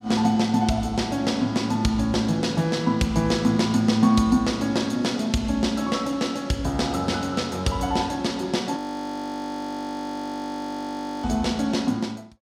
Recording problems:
frozen audio; at 9 s for 2.5 s

